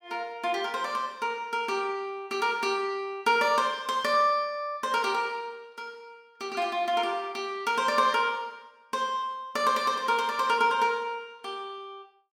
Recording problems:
none

